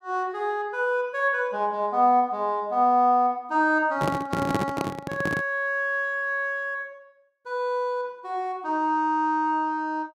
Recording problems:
microphone handling noise; from 4 to 5.5 s; peak +3 dB vs average level

